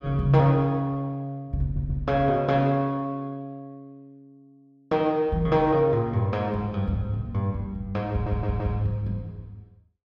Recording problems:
audio stuttering; at 1.5 s and at 8 s

